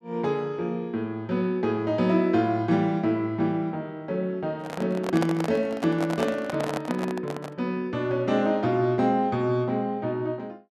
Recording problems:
handling noise; from 4.5 to 7.5 s; peak +1 dB vs average level

